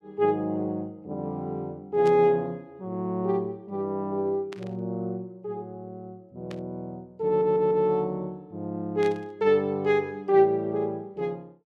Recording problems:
burst of static; 4 times, first at 2 s; peak -11 dB vs average level
stutter; at 7.5 s

